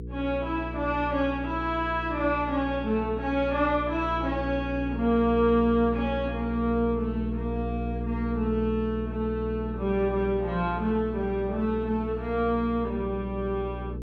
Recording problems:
hum; 60 Hz, harmonics up to 480 Hz, SNR 8 dB

